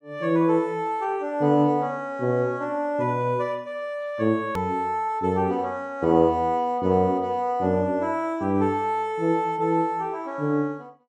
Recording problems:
click at an edit; at 4.5 s

